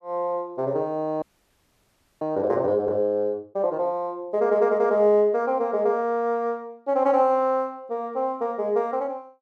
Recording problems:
frozen audio; at 1 s for 1 s

